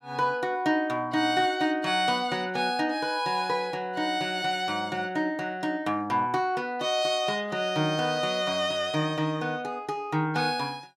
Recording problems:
none

